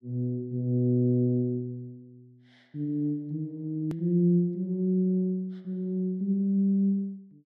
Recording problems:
hard cut with a click; at 4 s

